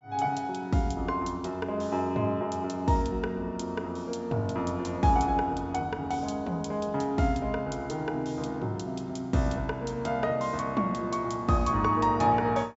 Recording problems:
treble cut off; nothing above 8 kHz

